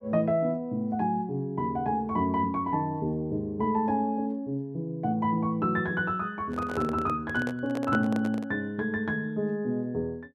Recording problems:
microphone handling noise; from 6.5 to 8.5 s; peak -3 dB vs average level

